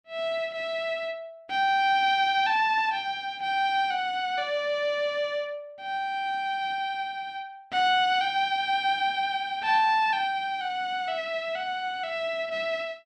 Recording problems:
none

